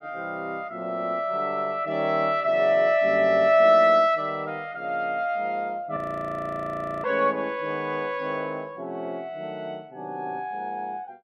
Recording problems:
audio freezing; at 6 s for 1 s

